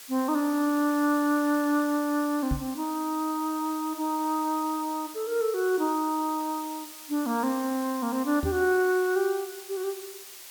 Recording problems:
hiss; slope +2 dB per octave, SNR 14 dB
knock on the microphone; at 2.5 s and at 8.5 s; peak +1 dB vs average level

